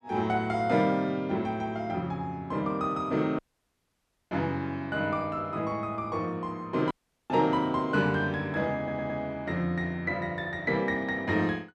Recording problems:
audio cutting out; at 3.5 s for 1 s and at 7 s
stutter; at 9 s

